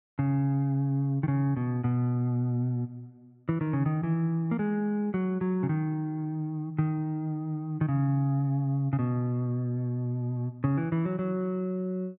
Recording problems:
none

